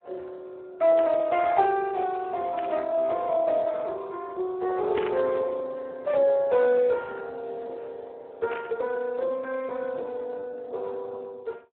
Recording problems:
phone line; 320 Hz to 2.8 kHz, Speex
static burst; 4 times, first at 1 s; peak -6 dB vs average level

